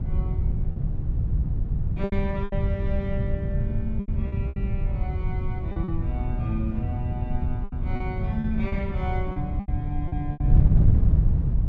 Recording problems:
wind on the microphone; below 120 Hz, SNR -7 dB
lost packets; 9% of the sound replaced, filled with repeated pitch periods

